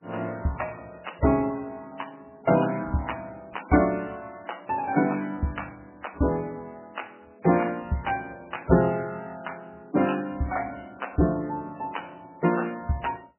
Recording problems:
lossy codec; MP3, log-spectral distance 6 dB, nothing above 3 kHz

